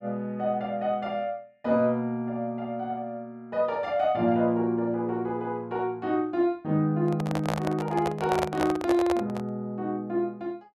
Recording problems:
handling noise; from 7 to 9.5 s; peak +3 dB vs average level

